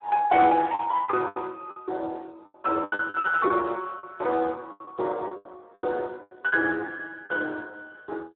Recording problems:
phone line; 280 Hz to 3 kHz, Speex
lost packets; 12% of the sound replaced, filled with the last packet

